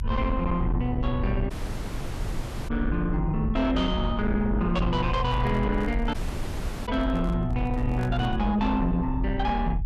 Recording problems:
distorted audio; soft clipping, signal-to-distortion ratio 11 dB
low-frequency rumble; below 76 Hz, SNR 4 dB
audio cutting out; at 1.5 s for 1 s and at 6 s for 0.5 s
handling noise; from 5 to 8.5 s; peak -6 dB vs average level

